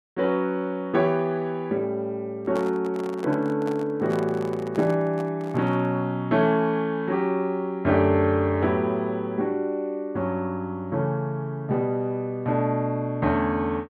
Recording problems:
handling noise; from 2.5 to 6 s; peak -7 dB vs average level

